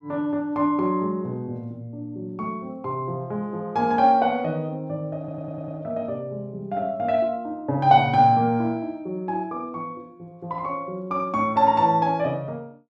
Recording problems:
stutter; at 5 s

